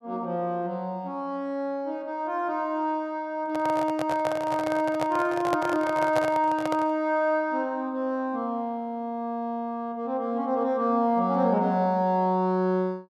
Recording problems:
handling noise; from 3.5 to 7 s; peak +2 dB vs average level

